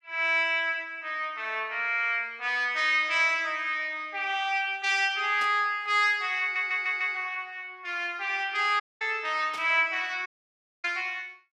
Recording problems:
static burst; at 5.5 s and at 9.5 s; peak -11 dB vs average level
audio stuttering; at 6.5 s
audio cutting out; at 9 s and at 10 s for 0.5 s

